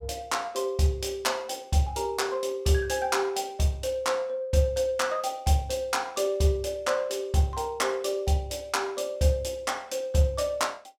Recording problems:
none

